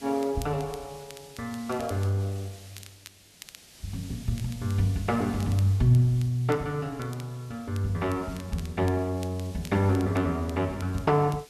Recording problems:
hiss; SNR 22 dB
crackle; vinyl, SNR 22 dB

